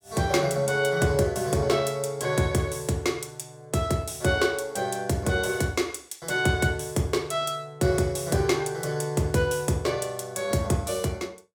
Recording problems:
none

